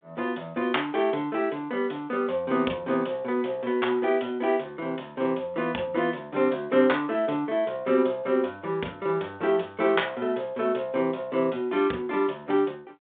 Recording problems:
telephone audio; 220 Hz to 3.6 kHz, G.726

